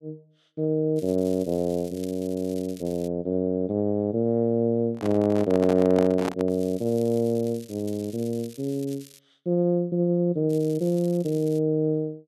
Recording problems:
crackle; from 1 to 3 s, from 6.5 to 9 s and from 11 to 12 s; loose cable, SNR 23 dB
microphone handling noise; from 5 to 6.5 s; peak -2 dB vs average level

